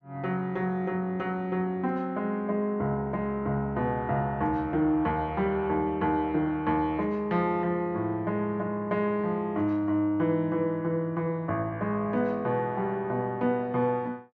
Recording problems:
treble cut off; nothing above 8 kHz

